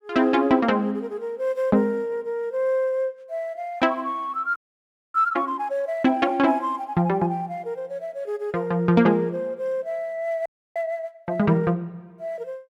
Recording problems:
audio freezing; at 4.5 s for 0.5 s and at 10 s

